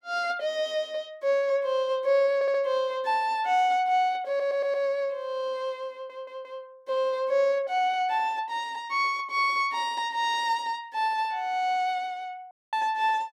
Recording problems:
audio stuttering; at 2.5 s, at 4.5 s and at 6 s
audio cutting out; at 13 s

